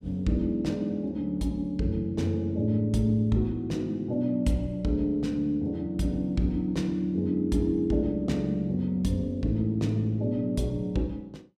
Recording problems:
none

